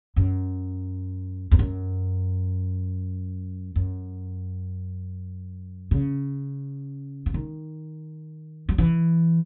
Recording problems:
low-pass filter; nothing above 4 kHz

